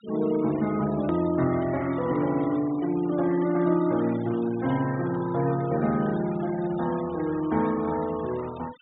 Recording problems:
low-pass filter; nothing above 4 kHz
denoising artefacts; signal-to-artefact ratio 19 dB
click at an edit; at 1 s

